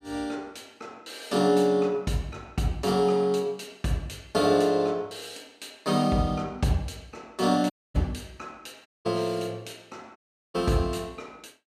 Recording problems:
dropout; at 7.5 s, at 9 s and at 10 s

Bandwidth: 14 kHz